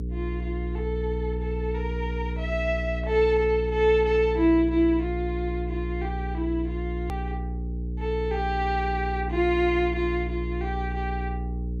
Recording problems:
hum; 60 Hz, harmonics up to 480 Hz, SNR 5 dB
click at an edit; at 7 s

